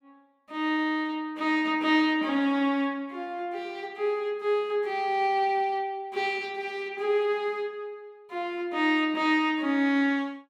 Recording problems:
none

